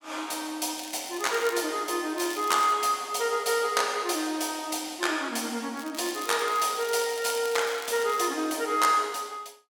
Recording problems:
crackling; at 1 s, at 2 s and from 6 to 8.5 s; loose cable, SNR 15 dB

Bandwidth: 17.5 kHz